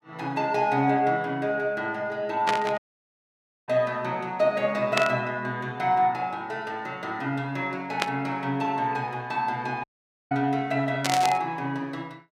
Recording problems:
burst of static; 4 times, first at 2.5 s; peak +6 dB vs average level
audio cutting out; at 3 s for 1 s and at 10 s

